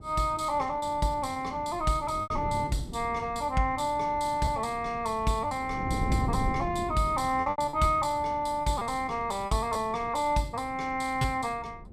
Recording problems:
wind on the microphone; below 220 Hz, SNR 11 dB
lost packets; 6% of the sound replaced, filled with repeated pitch periods

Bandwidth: 14.5 kHz